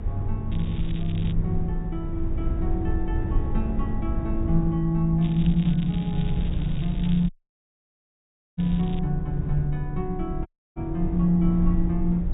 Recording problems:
treble missing; nothing above 4 kHz
rumble; below 82 Hz, SNR 4 dB
crackle; at 0.5 s and from 5 to 9 s; loose cable, SNR 20 dB
audio cutting out; at 7.5 s for 1.5 s and at 10 s

